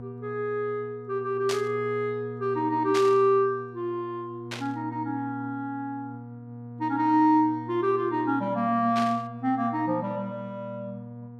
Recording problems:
hum; 60 Hz, harmonics up to 960 Hz, SNR 14 dB
static burst; 4 times, first at 1.5 s; peak -2 dB vs average level

